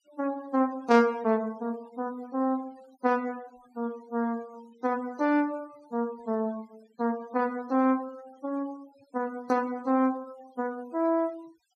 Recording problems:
denoising artefacts; signal-to-artefact ratio 25 dB

